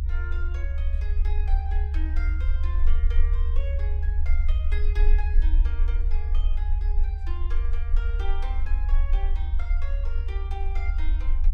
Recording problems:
low-frequency rumble; below 64 Hz, strongest tone 24 Hz, SNR -15 dB

